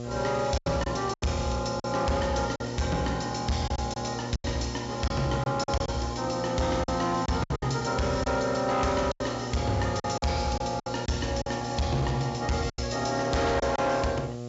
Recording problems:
treble missing; nothing above 8 kHz
distortion; hard clipping, uneven, signal-to-distortion ratio 12 dB
electrical hum; 60 Hz, harmonics up to 1.3 kHz, SNR 8 dB
hiss; SNR 24 dB
lost packets; 8% of the sound replaced, filled with silence

